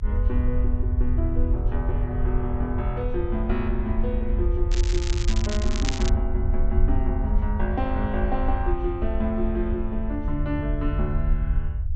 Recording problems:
treble missing; nothing above 8 kHz
low-frequency rumble; below 70 Hz, SNR -3 dB
crackling; from 4.5 to 6 s; loose cable, SNR 5 dB

